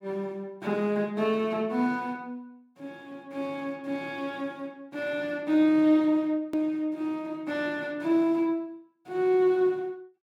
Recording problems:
hard cut with a click; at 6.5 s

